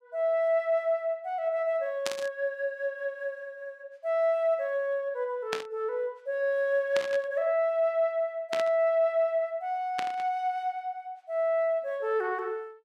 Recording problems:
static burst; 5 times, first at 2 s; peak +1 dB vs average level

